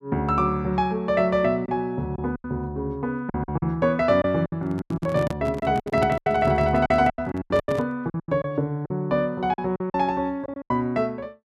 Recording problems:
packet loss; 12% of the sound replaced, filled with silence
handling noise; from 4.5 to 8 s; peak 0 dB vs average level

